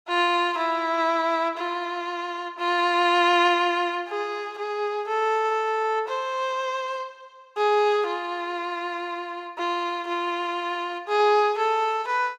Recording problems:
none

